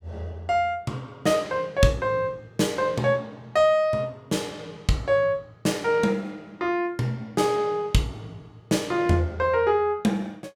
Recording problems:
none

